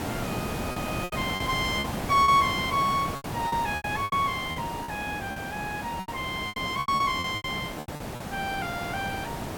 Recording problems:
hiss; slope -6 dB per octave, SNR 6 dB
lost packets; 12% of the sound replaced, filled with repeated pitch periods

